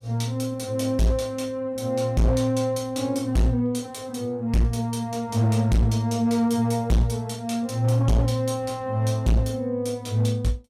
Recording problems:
distorted audio; hard clipping, signal-to-distortion ratio 6 dB

